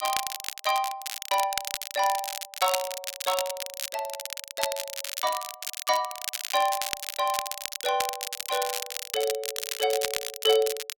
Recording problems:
crackling; vinyl, SNR 4 dB

